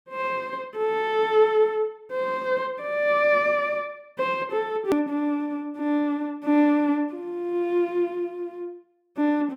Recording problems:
edit click; at 5 s

